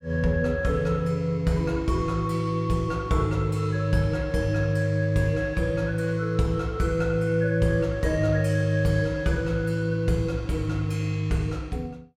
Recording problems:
none

